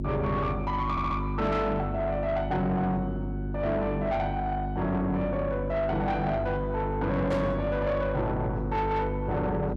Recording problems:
distorted audio; soft clipping, signal-to-distortion ratio 11 dB
hum; 50 Hz, harmonics up to 550 Hz, SNR 4 dB
audio stuttering; at 1 s
static burst; at 7.5 s; peak -12 dB vs average level

